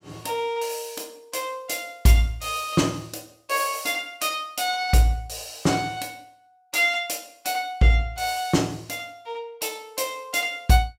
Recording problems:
none

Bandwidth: 16.5 kHz